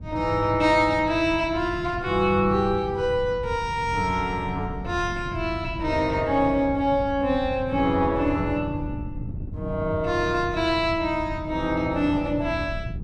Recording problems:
wind on the microphone; below 150 Hz, SNR 11 dB

